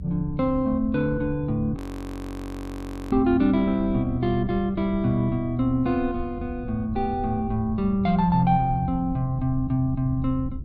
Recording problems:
rumble; below 100 Hz, SNR 12 dB
audio freezing; at 2 s for 1.5 s

